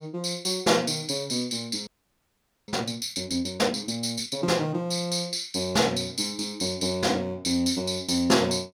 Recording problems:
audio freezing; at 2 s for 1 s

